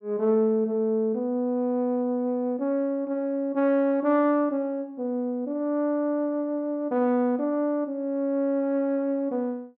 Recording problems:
none

